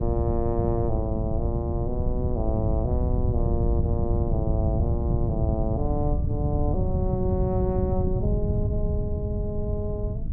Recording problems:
wind noise; below 130 Hz, SNR -3 dB

